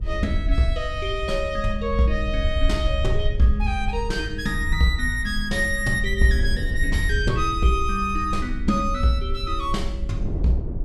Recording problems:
low-frequency rumble; below 66 Hz, SNR 4 dB
wind noise; below 280 Hz, SNR 17 dB

